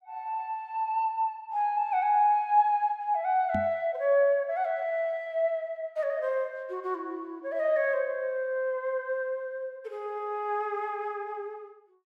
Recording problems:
knock on the microphone; at 3.5 s; peak -1 dB vs average level

